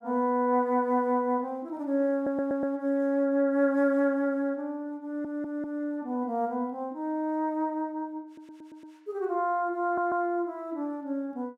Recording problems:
audio stuttering; 4 times, first at 2 s

